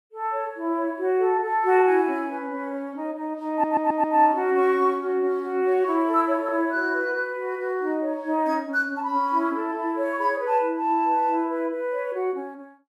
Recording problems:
audio stuttering; at 3.5 s

